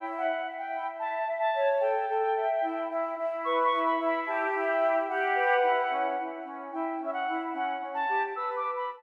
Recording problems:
none

